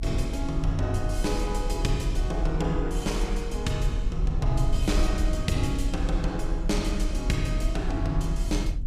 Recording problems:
rumble; below 48 Hz, strongest tone 40 Hz, SNR 1 dB

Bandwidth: 15 kHz